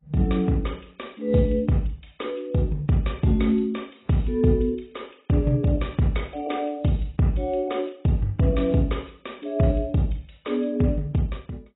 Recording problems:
lossy compression; AAC, log-spectral distance 5 dB, nothing above 3.8 kHz

